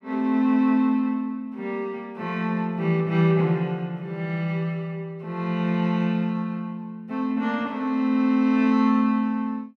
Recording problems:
none

